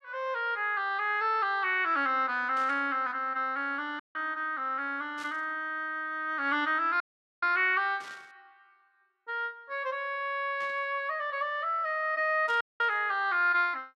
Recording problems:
static burst; 5 times, first at 2.5 s; peak -14 dB vs average level
dropout; at 4 s, at 7 s and at 13 s

